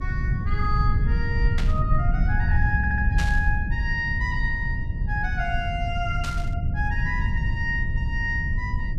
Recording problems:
hum; 60 Hz, harmonics up to 660 Hz, SNR 20 dB
rumble; below 100 Hz, SNR -3 dB
static burst; at 1.5 s, at 3 s and at 6 s; peak 0 dB vs average level
stutter; at 3 s

